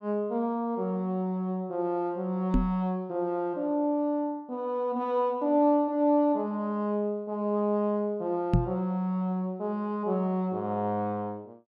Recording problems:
microphone bump; at 2.5 s and at 8.5 s; peak +8 dB vs average level

